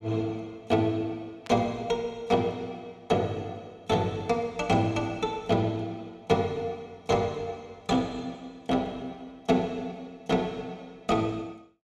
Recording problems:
burst of static; at 1.5 s; peak -10 dB vs average level

